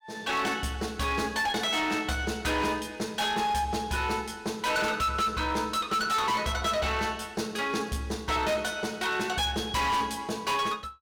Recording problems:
distortion; hard clipping, uneven, signal-to-distortion ratio 8 dB

